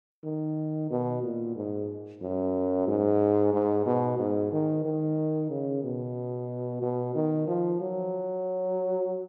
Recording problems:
none

